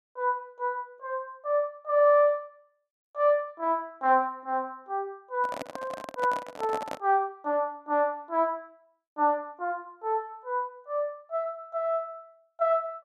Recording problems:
handling noise; from 5.5 to 7 s; peak -3 dB vs average level

